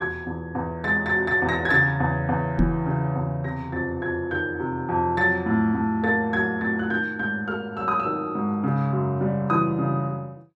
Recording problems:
knock on the microphone; at 2.5 s; peak +6 dB vs average level

